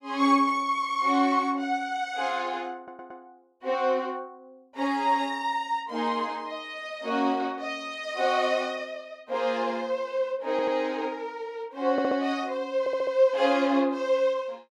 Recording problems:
stutter; 4 times, first at 3 s

